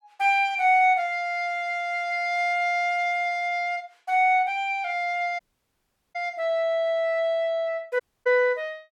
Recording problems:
audio cutting out; at 5.5 s for 1 s and at 8 s

